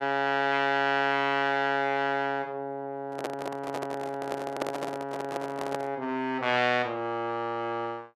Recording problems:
microphone handling noise; from 3 to 6 s; peak +2 dB vs average level

